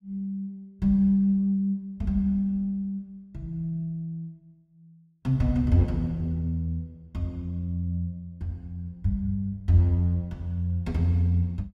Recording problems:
none

